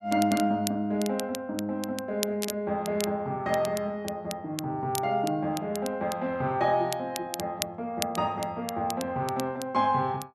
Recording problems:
crackle; vinyl, SNR 10 dB

